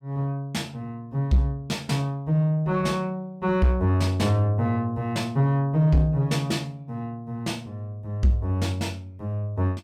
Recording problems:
distortion; soft clipping, signal-to-distortion ratio 12 dB

